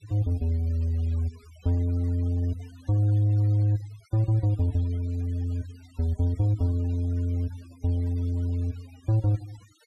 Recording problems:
noise reduction artefacts; signal-to-artefact ratio 27 dB

